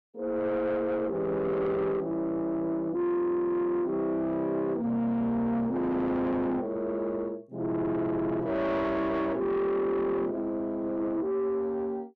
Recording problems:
distortion; soft clipping, signal-to-distortion ratio 10 dB

